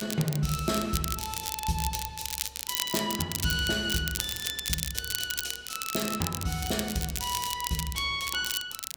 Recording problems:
hiss; SNR 29 dB
crackle; vinyl, SNR 2 dB

